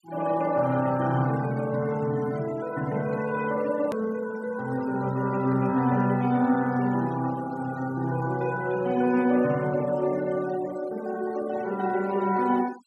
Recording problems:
denoising artefacts; signal-to-artefact ratio 20 dB
edit click; at 4 s

